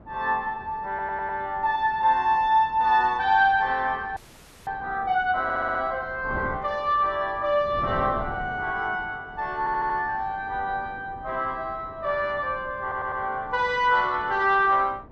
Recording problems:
wind noise; below 470 Hz, SNR 19 dB
audio stuttering; 4 times, first at 1 s
frozen audio; at 4 s for 0.5 s

